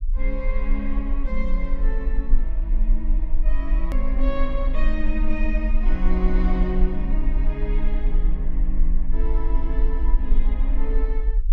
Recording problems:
low-frequency rumble; below 38 Hz, strongest tone 18 Hz, SNR -6 dB
click at an edit; at 4 s

